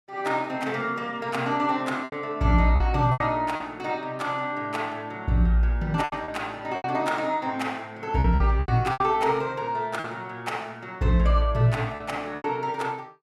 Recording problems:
lost packets; 6% of the sound replaced, filled with repeated pitch periods

